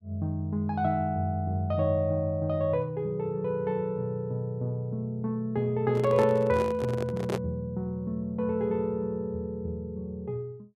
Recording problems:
microphone handling noise; from 6 to 7.5 s; peak +1 dB vs average level

